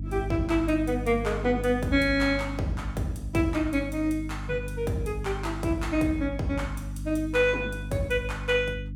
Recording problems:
hum; 50 Hz, harmonics up to 300 Hz, SNR 8 dB

